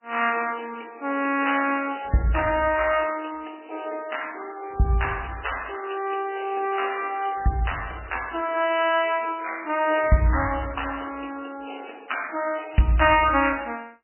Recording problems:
codec artefacts; MP3, log-spectral distance 11 dB, nothing above 3 kHz

